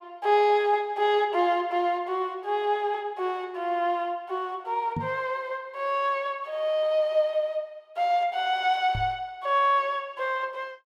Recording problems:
microphone bump; at 5 s and at 9 s; peak -1 dB vs average level

